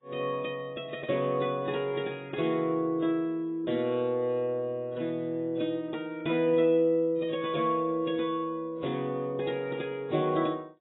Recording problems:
lossy compression; AAC, log-spectral distance 2 dB, nothing above 3.5 kHz

